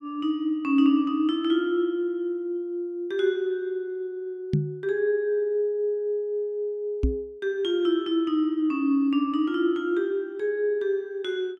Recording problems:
microphone bump; at 4.5 s and at 7 s; peak +6 dB vs average level

